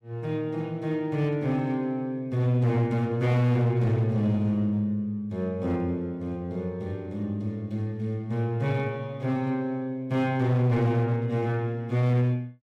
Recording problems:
distorted audio; hard clipping, signal-to-distortion ratio 11 dB

